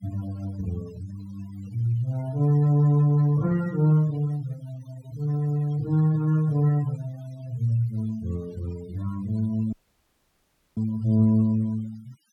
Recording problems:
noise reduction artefacts; signal-to-artefact ratio 25 dB
audio cutting out; at 9.5 s for 1 s

